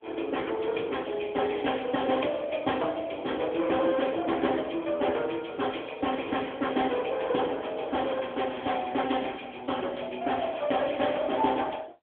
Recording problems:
telephone audio; 280 Hz to 3.4 kHz, AMR-NB

